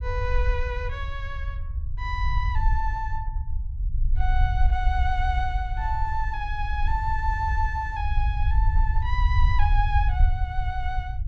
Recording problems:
low-frequency rumble; below 66 Hz, SNR -3 dB

